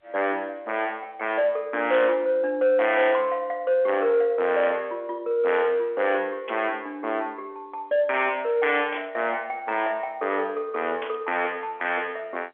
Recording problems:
phone line; 220 Hz to 3.5 kHz, G.711
distorted audio; soft clipping, signal-to-distortion ratio 11 dB
burst of static; 4 times, first at 2 s; peak -6 dB vs average level

